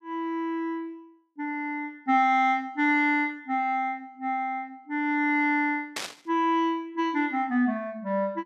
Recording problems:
static burst; at 6 s; peak -1 dB vs average level

